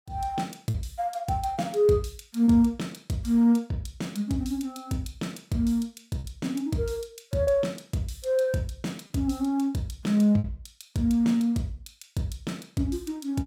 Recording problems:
lost packets; 2% of the sound replaced, filled with repeated pitch periods

